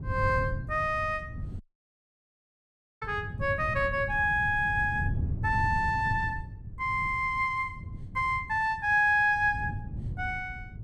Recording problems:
wind noise; below 130 Hz, SNR 9 dB
dropout; at 1.5 s for 1.5 s

